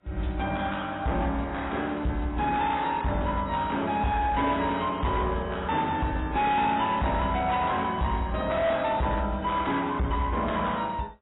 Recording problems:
codec artefacts; AAC, log-spectral distance 3 dB, nothing above 3.8 kHz
distorted audio; hard clipping, signal-to-distortion ratio 11 dB

